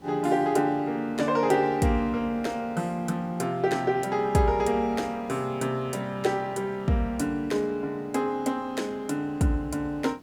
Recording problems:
hiss; slope -6 dB per octave, SNR 25 dB

